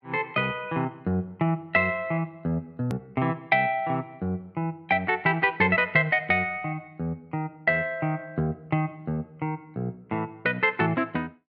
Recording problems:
hard cut with a click; at 3 s

